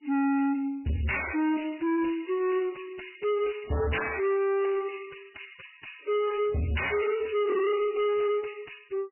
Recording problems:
lossy codec; MP3, log-spectral distance 10 dB, nothing above 2.9 kHz
distorted audio; soft clipping, signal-to-distortion ratio 6 dB

